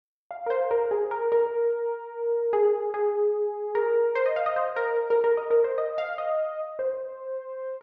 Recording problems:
none

